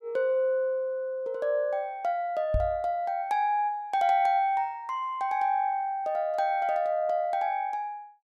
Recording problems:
microphone bump; at 2.5 s; peak +2 dB vs average level

